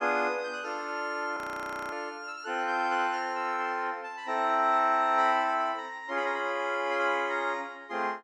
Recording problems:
frozen audio; at 1.5 s for 0.5 s

